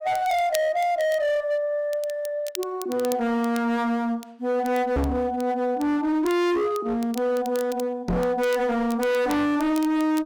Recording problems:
distorted audio; hard clipping, signal-to-distortion ratio 6 dB
crackling; vinyl, SNR 19 dB
microphone thump; at 5 s and at 8 s; peak +3 dB vs average level

